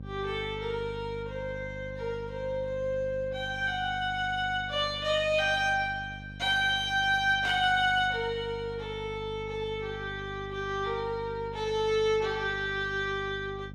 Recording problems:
hum; 50 Hz, harmonics up to 550 Hz, SNR 14 dB
static burst; at 7.5 s; peak -6 dB vs average level

